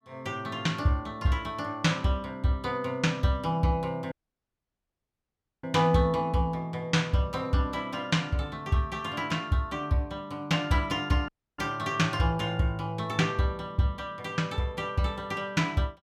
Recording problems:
audio cutting out; at 4 s for 1.5 s and at 11 s

